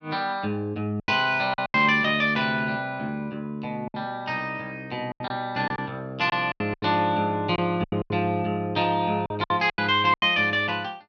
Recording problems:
packet loss; 9% of the sound replaced, filled with silence

